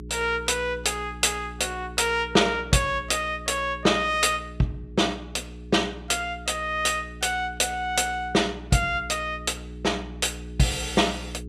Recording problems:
electrical hum; 60 Hz, harmonics up to 420 Hz, SNR 15 dB

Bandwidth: 14.5 kHz